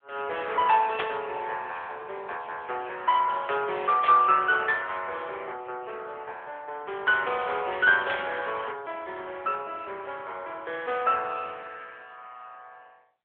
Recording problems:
telephone audio; 340 Hz to 3.5 kHz, AMR-NB
static burst; at 1 s, at 4 s and at 8 s; peak +2 dB vs average level

